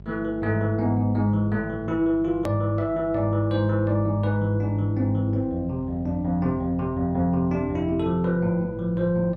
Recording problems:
mains hum; 50 Hz, harmonics up to 600 Hz, SNR 17 dB
edit click; at 2.5 s

